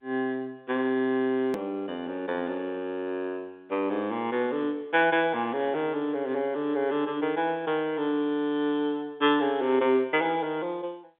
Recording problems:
telephone audio; 190 Hz to 3.6 kHz, G.711
edit click; at 1.5 s

